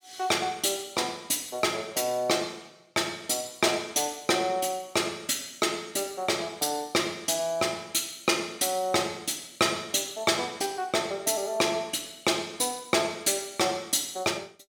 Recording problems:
none

